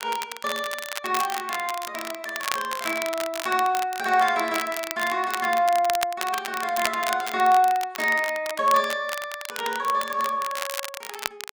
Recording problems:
crackling; vinyl, SNR 9 dB

